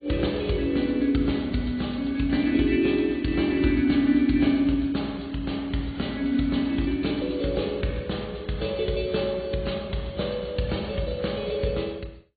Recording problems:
treble cut off; nothing above 4.5 kHz
codec artefacts; AAC, log-spectral distance 3 dB

